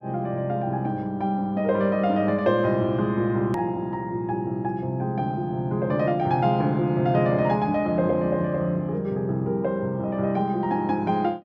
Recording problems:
click at an edit; at 3.5 s

